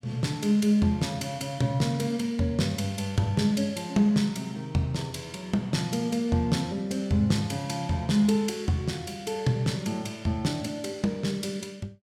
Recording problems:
none

